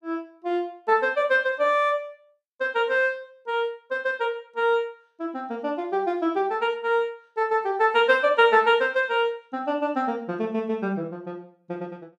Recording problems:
none

